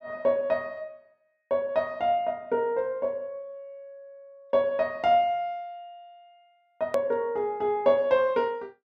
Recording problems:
edit click; at 7 s

